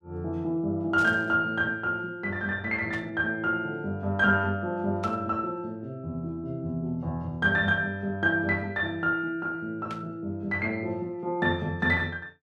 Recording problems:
static burst; 4 times, first at 1 s; peak -10 dB vs average level

